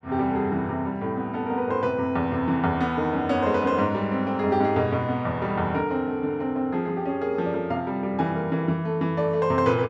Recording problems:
none

